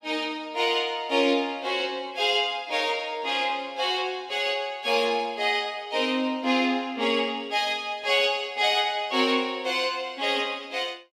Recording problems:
none

